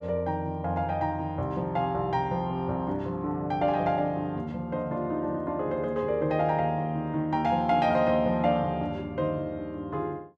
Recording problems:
none

